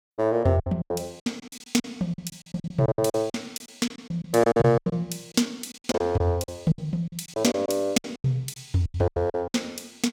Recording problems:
lost packets; 18% of the sound replaced, filled with silence

